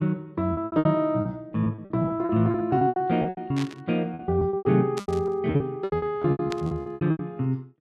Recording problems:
packet loss; 22% of the sound replaced, filled with repeated pitch periods
static burst; at 3.5 s, at 5 s and at 6.5 s; peak -5 dB vs average level

